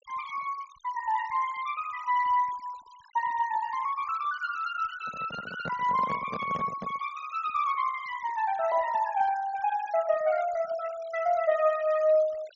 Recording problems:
treble cut off; nothing above 7.2 kHz
denoising artefacts; signal-to-artefact ratio 20 dB
handling noise; from 5 to 7 s; peak -5 dB vs average level

